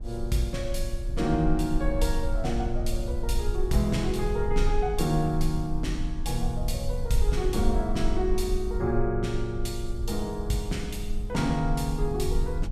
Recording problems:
rumble; below 52 Hz, strongest tone 22 Hz, SNR 3 dB

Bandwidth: 14.5 kHz